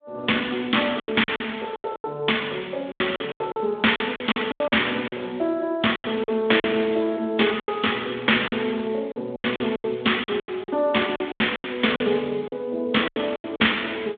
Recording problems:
telephone audio; 190 Hz to 3.6 kHz, Speex
packet loss; 14% of the sound replaced, filled with silence

